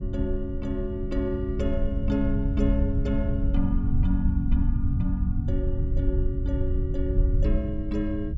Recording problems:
rumble; below 86 Hz, SNR -2 dB

